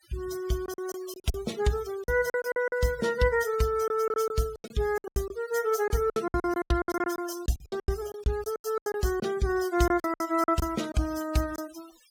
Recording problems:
denoising artefacts; signal-to-artefact ratio 16 dB
packet loss; 15% of the sound replaced, filled with silence

